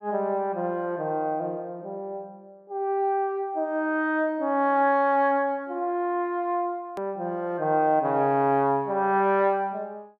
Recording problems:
edit click; at 7 s

